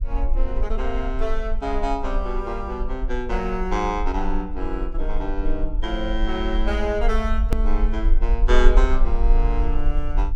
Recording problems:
low-frequency rumble; below 42 Hz, strongest tone 24 Hz, SNR -1 dB
click at an edit; at 7.5 s

